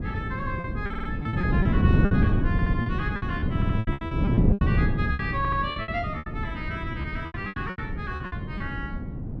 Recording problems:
wind noise; below 210 Hz, SNR -6 dB
lost packets; 16% of the sound replaced, filled with repeated pitch periods
stutter; 4 times, first at 1 s

